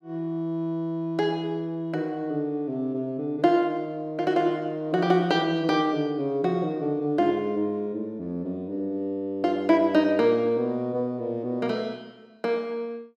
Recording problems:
none

